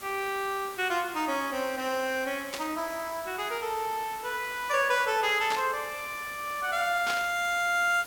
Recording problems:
hiss; slope -2 dB per octave, SNR 15 dB
static burst; at 2.5 s, at 5.5 s and at 7 s; peak 0 dB vs average level

